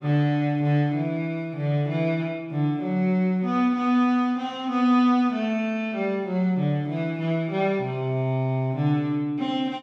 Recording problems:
none

